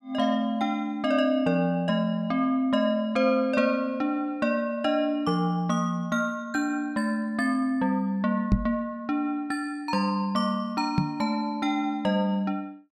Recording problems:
microphone thump; at 8.5 s and at 11 s; peak +8 dB vs average level

